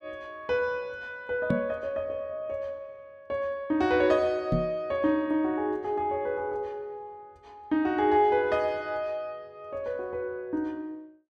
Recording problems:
knock on the microphone; at 1.5 s and at 4.5 s; peak +5 dB vs average level

